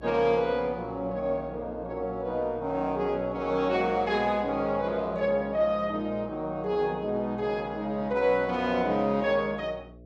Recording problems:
hum; 60 Hz, harmonics up to 660 Hz, SNR 20 dB

